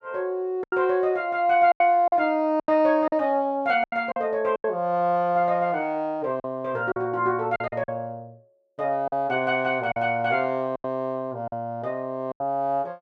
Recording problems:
lost packets; 8% of the sound replaced, filled with silence

